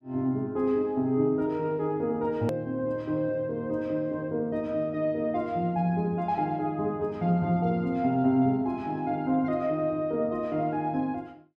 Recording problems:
click at an edit; at 2.5 s

